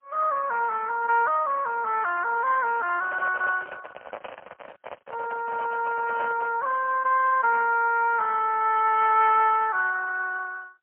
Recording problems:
telephone audio; 390 Hz to 3.1 kHz, AMR-NB, then MP3
handling noise; from 3 to 6.5 s; peak -6 dB vs average level

